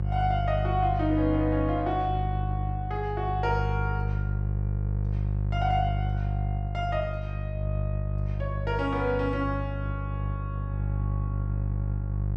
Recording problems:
hum; 50 Hz, harmonics up to 400 Hz, SNR -1 dB

